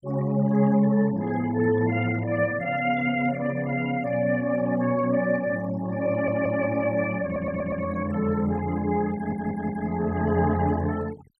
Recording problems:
denoising artefacts; signal-to-artefact ratio 18 dB
stutter; at 6 s, at 7 s and at 9 s

